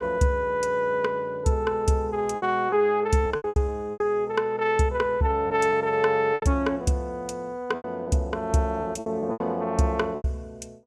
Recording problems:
lost packets; 8% of the sound replaced, filled with repeated pitch periods

